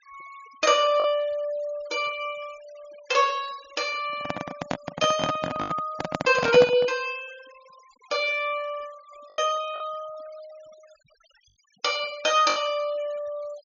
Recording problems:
treble cut off; nothing above 7.2 kHz
noise reduction artefacts; signal-to-artefact ratio 22 dB
lost packets; 2% of the sound replaced, filled with the last packet
handling noise; from 4 to 7 s; peak +3 dB vs average level

